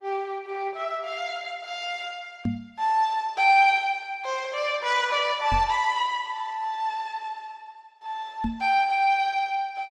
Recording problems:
lossy compression; Opus, log-spectral distance 2 dB
microphone thump; at 2.5 s, at 5.5 s and at 8.5 s; peak +1 dB vs average level

